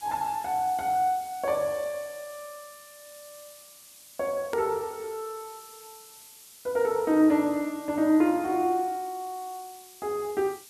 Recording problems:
background hiss; SNR 20 dB
click at an edit; at 4.5 s

